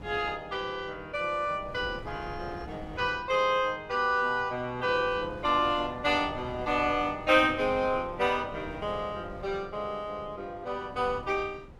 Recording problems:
wind on the microphone; below 410 Hz, SNR 17 dB

